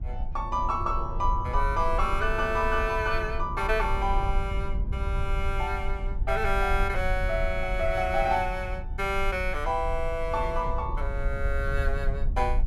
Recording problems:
low-frequency rumble; below 60 Hz, SNR 4 dB

